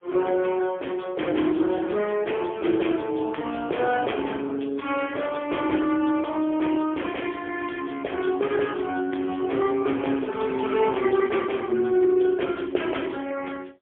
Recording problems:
phone line; 280 Hz to 3.4 kHz, AMR-NB, then MP3

